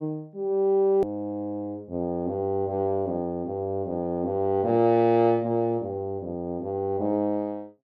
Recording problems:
click at an edit; at 1 s

